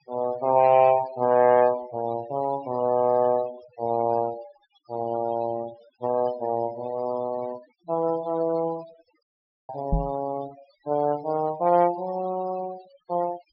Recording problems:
treble missing; nothing above 5.3 kHz
denoising artefacts; signal-to-artefact ratio 19 dB
dropout; at 9 s
knock on the microphone; at 10 s; peak +3 dB vs average level

